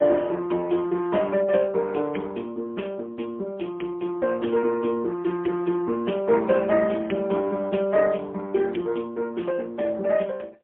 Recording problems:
phone line; 240 Hz to 3.3 kHz, AMR-NB, then MP3

